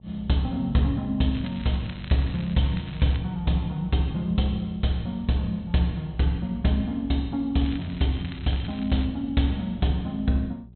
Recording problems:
treble missing; nothing above 4.1 kHz
electrical hum; 60 Hz, harmonics up to 420 Hz, SNR 23 dB
crackling; from 1.5 to 3 s and from 7.5 to 9 s; loose cable, SNR 18 dB

